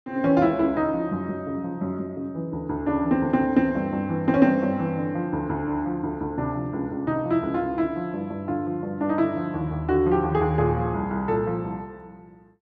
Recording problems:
none

